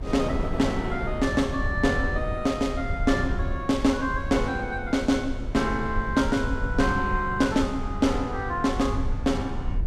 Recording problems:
low-frequency rumble; below 84 Hz, SNR 8 dB
wind noise; below 410 Hz, SNR 12 dB

